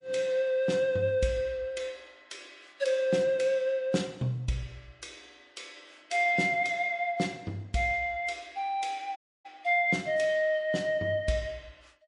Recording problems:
codec artefacts; MP3, log-spectral distance 2 dB, nothing above 10.4 kHz
dropout; at 9 s

